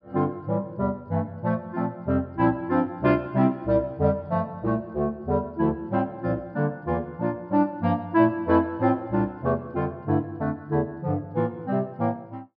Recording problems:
treble missing; nothing above 5.5 kHz

